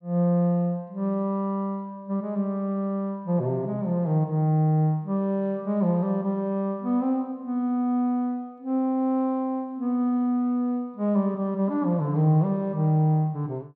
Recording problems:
none

